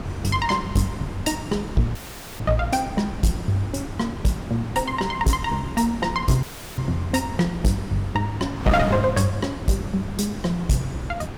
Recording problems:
distorted audio; hard clipping, uneven, signal-to-distortion ratio 11 dB
wind on the microphone; below 500 Hz, SNR 9 dB
dropout; at 2 s and at 6.5 s

